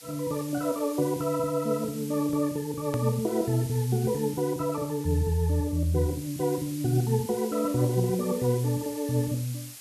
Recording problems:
hiss; slope +3 dB per octave, SNR 15 dB
hard cut with a click; at 3 s

